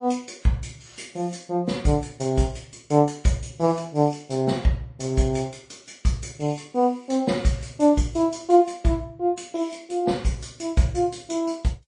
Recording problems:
lossy compression; MP3, log-spectral distance 3 dB, nothing above 9.2 kHz

